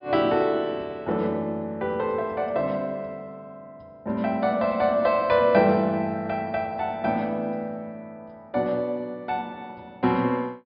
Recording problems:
treble missing; nothing above 5.5 kHz

